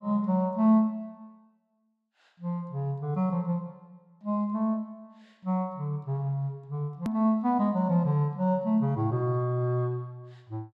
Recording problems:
hard cut with a click; at 7 s

